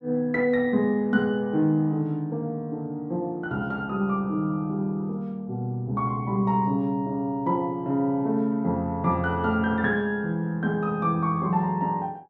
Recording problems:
none

